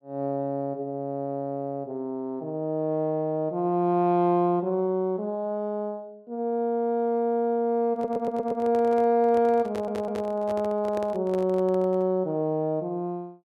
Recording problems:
handling noise; from 8 to 12 s; peak -7 dB vs average level
stutter; at 8 s and at 9.5 s

